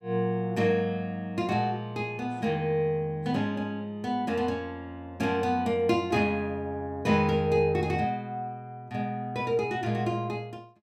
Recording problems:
none

